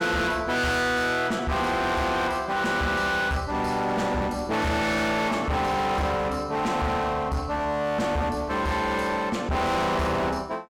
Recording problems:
distorted audio; hard clipping, uneven, signal-to-distortion ratio 6 dB

